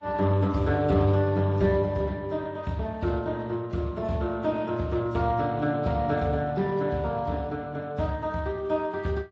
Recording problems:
lossy compression; Speex, then AAC, log-spectral distance 3 dB

